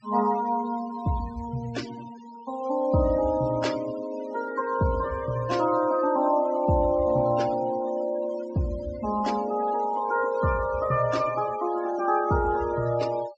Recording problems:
low-pass filter; nothing above 8 kHz
denoising artefacts; signal-to-artefact ratio 18 dB

